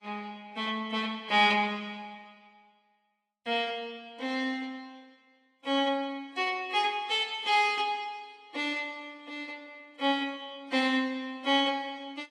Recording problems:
lossy codec; AAC, log-spectral distance 2 dB, nothing above 11.6 kHz

